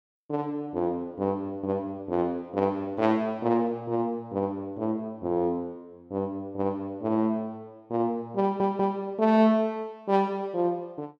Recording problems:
audio stuttering; at 8.5 s

